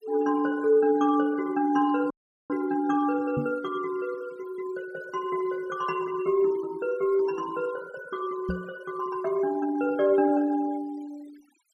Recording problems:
denoising artefacts; signal-to-artefact ratio 23 dB
dropout; at 2 s
microphone thump; at 3.5 s and at 8.5 s; peak 0 dB vs average level

